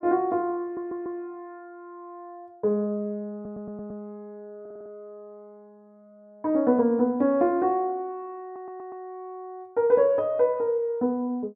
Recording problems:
stutter; 4 times, first at 0.5 s

